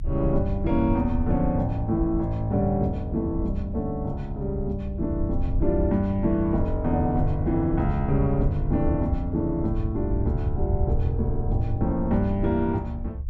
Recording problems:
rumble; below 84 Hz, SNR 5 dB

